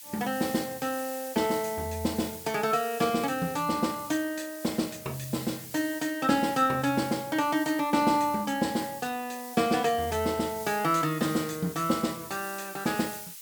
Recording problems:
hiss; slope +5 dB per octave, SNR 13 dB

